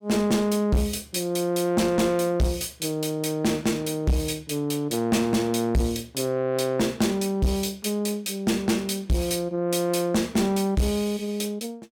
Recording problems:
distortion; soft clipping, signal-to-distortion ratio 7 dB

